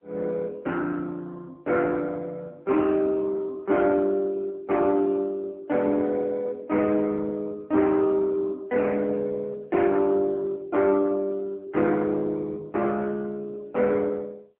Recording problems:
telephone audio; 220 Hz to 3.5 kHz, AMR-NB

